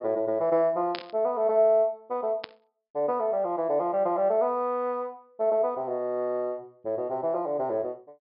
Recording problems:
treble missing; nothing above 5.5 kHz
static burst; at 1 s and at 2.5 s; peak -4 dB vs average level

